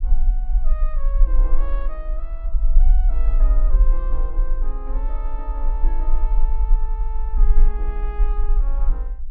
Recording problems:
low-frequency rumble; below 40 Hz, strongest tone 22 Hz, SNR -16 dB

